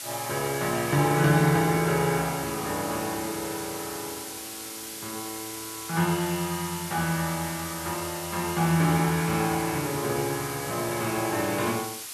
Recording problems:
hiss; slope +2 dB per octave, SNR 8 dB

